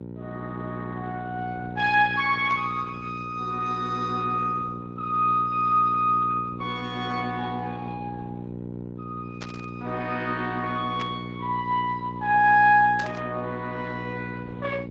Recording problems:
lossy codec; Speex, then Opus, log-spectral distance 3 dB
hum; 60 Hz, harmonics up to 960 Hz, SNR 11 dB
burst of static; 4 times, first at 2.5 s; peak -7 dB vs average level

